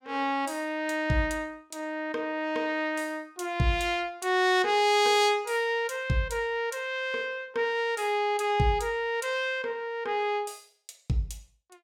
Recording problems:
none

